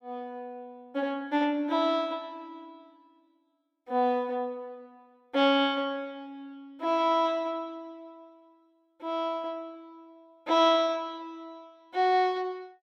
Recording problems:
none

